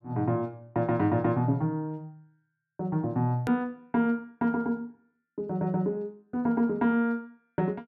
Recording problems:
hard cut with a click; at 3.5 s

